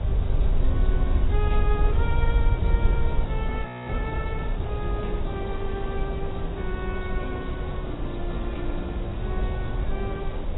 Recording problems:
codec artefacts; AAC, then AAC, log-spectral distance 4 dB, nothing above 3.8 kHz
hiss; SNR 2 dB
rumble; below 66 Hz, SNR -6 dB
wind on the microphone; below 260 Hz, SNR 18 dB
audio freezing; at 3.5 s

